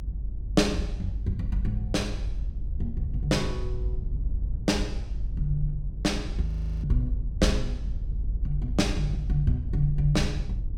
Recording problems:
rumble; below 64 Hz, strongest tone 48 Hz, SNR 3 dB
frozen audio; at 6.5 s

